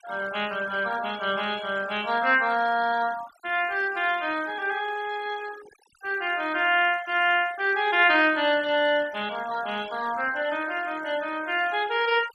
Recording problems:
noise reduction artefacts; signal-to-artefact ratio 19 dB

